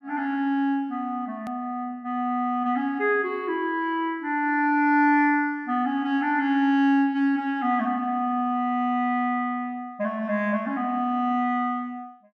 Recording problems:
hard cut with a click; at 1.5 s

